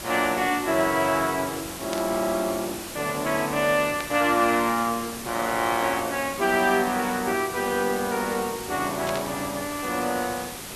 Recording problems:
hiss; slope -2 dB per octave, SNR 10 dB
burst of static; at 2 s, at 4 s and at 9 s; peak -5 dB vs average level

